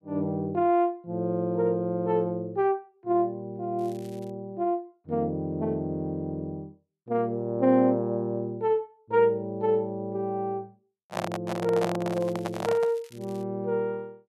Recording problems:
crackle; at 4 s and from 12 to 13 s; loose cable, SNR 27 dB
handling noise; from 11 to 13 s; peak +1 dB vs average level

